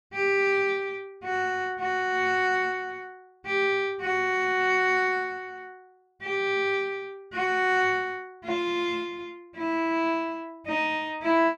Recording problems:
none

